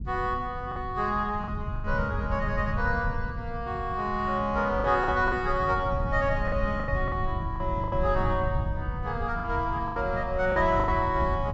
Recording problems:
low-pass filter; nothing above 8 kHz
low-frequency rumble; below 120 Hz, SNR 6 dB
lost packets; 7% of the sound replaced, filled with the last packet

